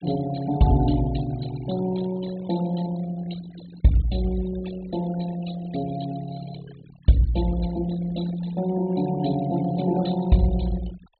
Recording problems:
treble cut off; nothing above 4.3 kHz
noise reduction artefacts; signal-to-artefact ratio 16 dB

